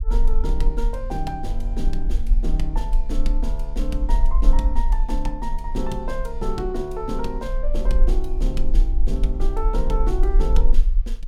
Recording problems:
rumble; below 38 Hz, strongest tone 20 Hz, SNR -5 dB

